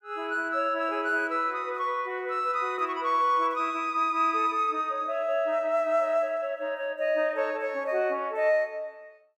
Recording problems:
none

